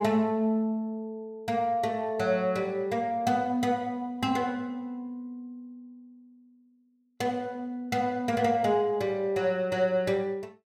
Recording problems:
none

